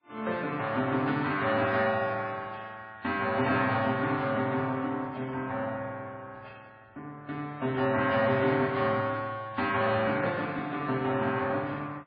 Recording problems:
lossy compression; Vorbis, then MP3, log-spectral distance 2 dB, nothing above 4.4 kHz

